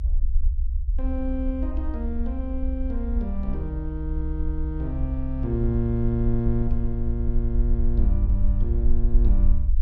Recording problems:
rumble; below 64 Hz, SNR -2 dB

